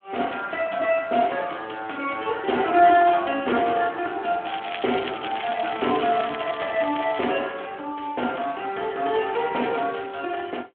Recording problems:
phone line; 260 Hz to 3.4 kHz, Speex
crackle; from 4.5 to 7.5 s; loose cable, SNR 11 dB

